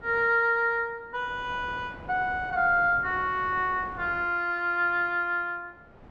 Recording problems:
wind noise; below 760 Hz, SNR 20 dB

